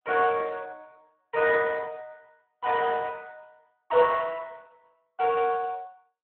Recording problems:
telephone audio; 320 Hz to 2.8 kHz, Speex

